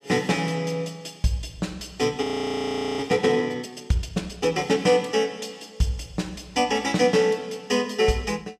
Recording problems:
frozen audio; at 2 s for 1 s

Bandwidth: 14.5 kHz